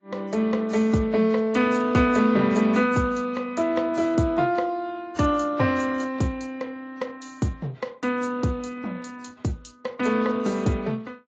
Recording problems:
lossy codec; Speex, then AAC, log-spectral distance 4 dB, nothing above 7.3 kHz

